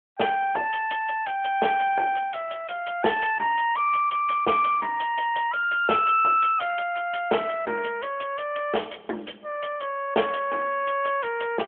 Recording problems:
telephone audio; 280 Hz to 3.4 kHz, AMR-NB

